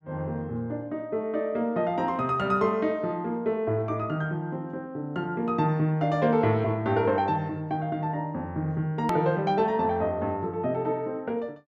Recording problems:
hard cut with a click; at 9 s

